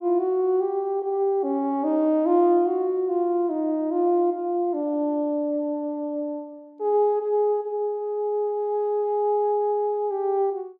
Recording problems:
none

